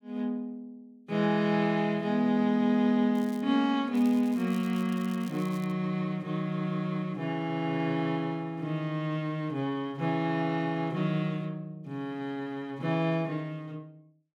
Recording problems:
crackle; at 3 s and from 4 to 5.5 s; loose cable, SNR 23 dB

